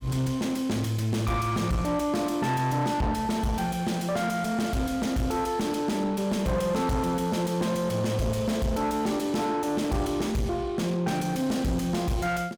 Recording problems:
distortion; soft clipping, signal-to-distortion ratio 7 dB

